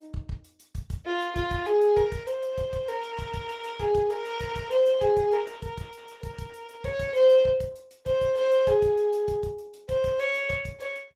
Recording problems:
codec artefacts; Opus, log-spectral distance 3 dB, nothing above 18.3 kHz

